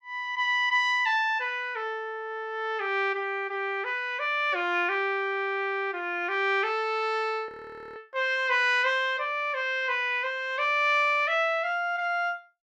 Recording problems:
audio freezing; at 7.5 s

